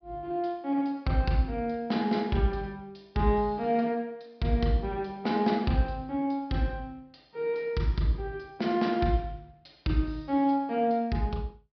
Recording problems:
treble missing; nothing above 5.5 kHz

